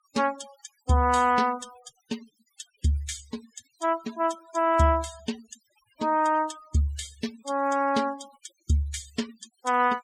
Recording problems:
denoising artefacts; signal-to-artefact ratio 18 dB

